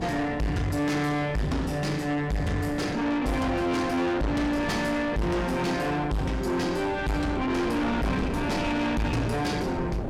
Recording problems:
distortion; soft clipping, signal-to-distortion ratio 7 dB
wind on the microphone; below 570 Hz, SNR 9 dB

